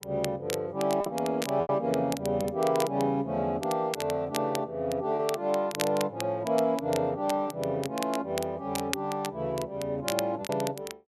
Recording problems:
crackling; vinyl, SNR 11 dB
lost packets; 2% of the sound replaced, filled with repeated pitch periods

